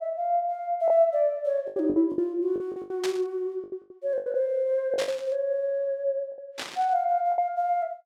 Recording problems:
lost packets; 11% of the sound replaced, filled with the last packet
static burst; at 3 s, at 5 s and at 6.5 s; peak -2 dB vs average level

